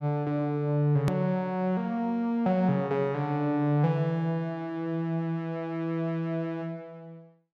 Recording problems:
hard cut with a click; at 1 s

